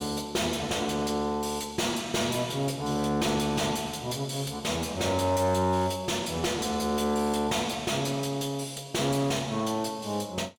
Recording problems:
distorted audio; soft clipping, signal-to-distortion ratio 10 dB

